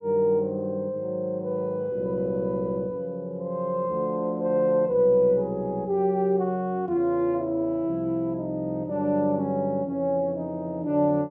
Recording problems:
none

